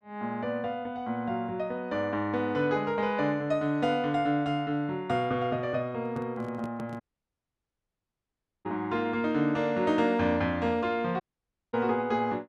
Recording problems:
handling noise; at 6 s; peak -10 dB vs average level
audio cutting out; at 7 s for 1.5 s and at 11 s for 0.5 s

